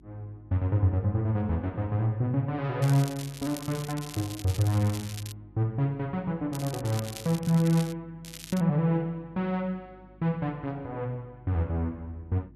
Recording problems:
hum; 50 Hz, harmonics up to 350 Hz, SNR 26 dB
crackle; 4 times, first at 3 s; loose cable, SNR 13 dB

